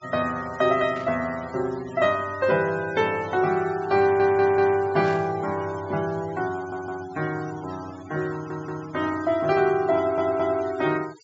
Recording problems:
low-pass filter; nothing above 7.5 kHz
denoising artefacts; signal-to-artefact ratio 19 dB
static burst; at 1 s and at 5 s; peak -13 dB vs average level
stutter; 4 times, first at 4 s

